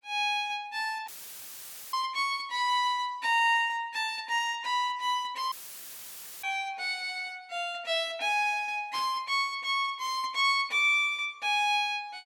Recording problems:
dropout; at 1 s for 1 s and at 5.5 s for 1 s; filled with static
static burst; at 9 s; peak -12 dB vs average level

